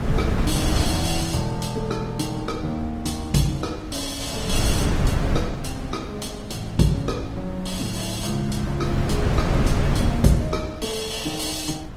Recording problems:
codec artefacts; Opus, log-spectral distance 4 dB, nothing above 18.9 kHz
wind noise; below 290 Hz, SNR 1 dB

